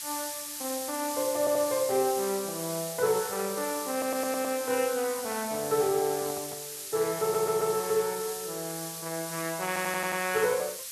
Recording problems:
lossy compression; Speex, log-spectral distance 2 dB
hiss; slope +5 dB per octave, SNR 6 dB
stutter; 4 times, first at 1.5 s
microphone handling noise; from 5 to 6.5 s; peak -12 dB vs average level

